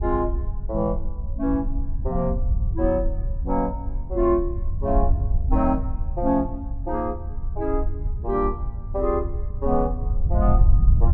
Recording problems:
rumble; below 70 Hz, SNR 1 dB

